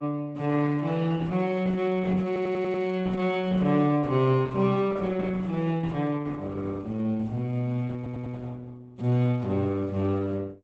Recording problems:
lossy codec; Opus, log-spectral distance 2 dB, nothing above 8 kHz
audio stuttering; at 2.5 s and at 8 s

